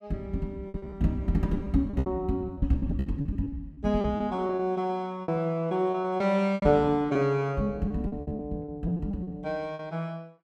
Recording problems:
packet loss; 15% of the sound replaced, filled with repeated pitch periods

